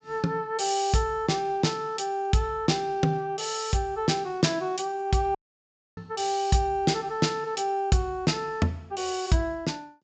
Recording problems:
treble missing; nothing above 8 kHz
dropout; at 5.5 s for 0.5 s

